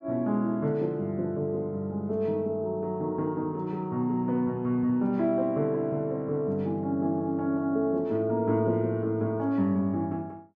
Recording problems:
none

